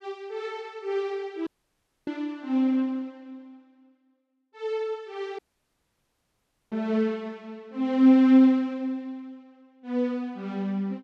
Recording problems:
dropout; at 1.5 s for 0.5 s and at 5.5 s for 1.5 s

